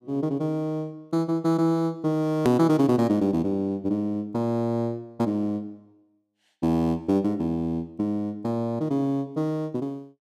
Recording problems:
edit click; at 2.5 s

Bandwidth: 14.5 kHz